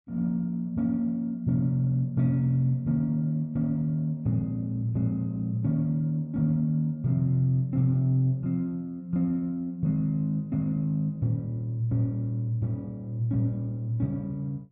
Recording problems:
none

